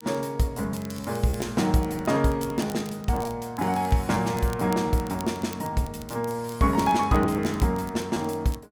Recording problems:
crackling; vinyl, SNR 21 dB
lost packets; 7% of the sound replaced, filled with repeated pitch periods

